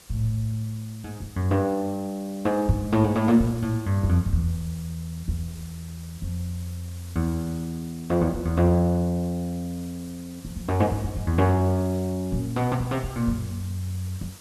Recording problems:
background hiss; slope -1 dB per octave, SNR 20 dB

